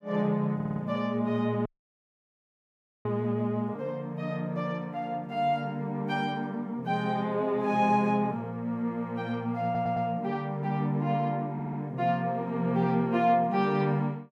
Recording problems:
stutter; at 0.5 s, at 9.5 s and at 12 s
dropout; at 1.5 s for 1.5 s

